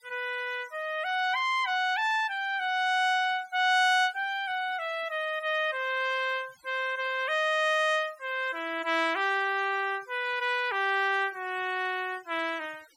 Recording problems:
noise reduction artefacts; signal-to-artefact ratio 23 dB

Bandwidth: 16.5 kHz